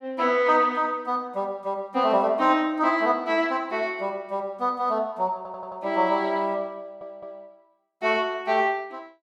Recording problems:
stutter; at 5.5 s and at 7 s

